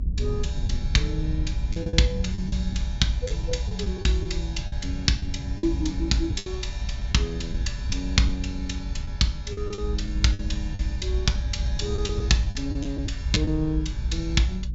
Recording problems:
low-pass filter; nothing above 7.5 kHz
rumble; below 82 Hz, SNR 2 dB
lost packets; 7% of the sound replaced, filled with the last packet

